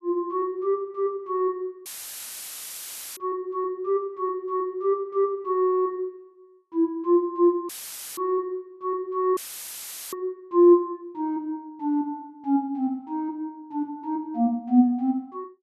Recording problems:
audio cutting out; at 2 s for 1.5 s, at 7.5 s and at 9.5 s for 1 s; filled with static

